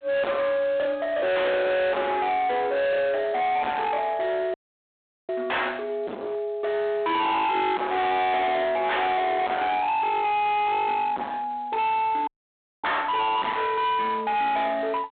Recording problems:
phone line; 260 Hz to 3.9 kHz, G.726
distorted audio; hard clipping, signal-to-distortion ratio 5 dB
audio cutting out; at 4.5 s for 1 s and at 12 s for 0.5 s

